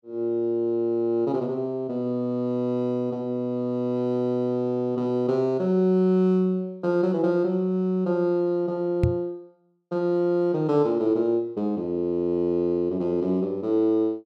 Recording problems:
microphone thump; at 9 s; peak +5 dB vs average level

